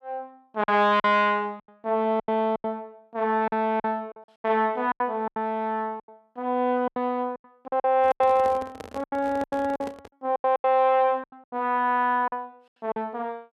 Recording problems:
lost packets; 14% of the sound replaced, filled with silence
microphone handling noise; from 8 to 10 s; peak -8 dB vs average level

